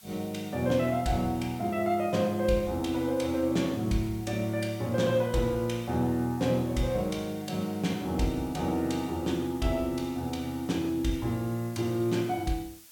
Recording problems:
hiss; slope +2 dB per octave, SNR 22 dB

